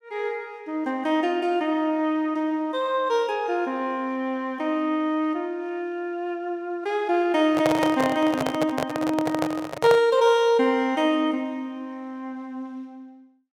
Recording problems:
handling noise; from 7.5 to 10 s; peak +3 dB vs average level

